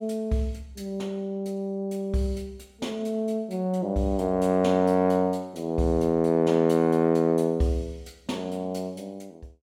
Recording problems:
none

